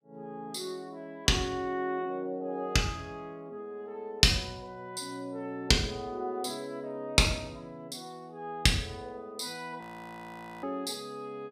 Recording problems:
frozen audio; at 10 s for 1 s

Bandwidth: 15.5 kHz